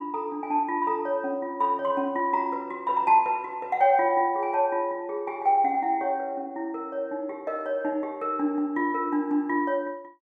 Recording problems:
none

